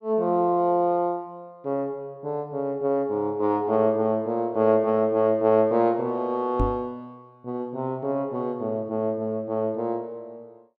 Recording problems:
knock on the microphone; at 6.5 s; peak +2 dB vs average level

